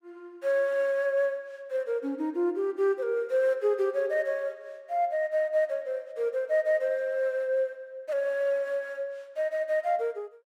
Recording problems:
none

